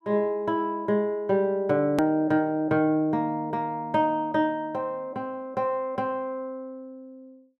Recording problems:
hard cut with a click; at 2 s

